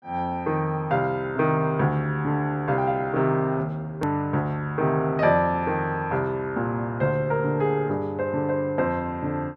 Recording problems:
hard cut with a click; at 4 s

